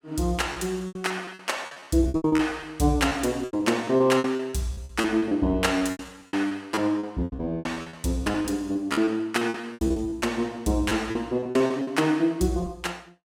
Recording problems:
lost packets; 18% of the sound replaced, filled with repeated pitch periods

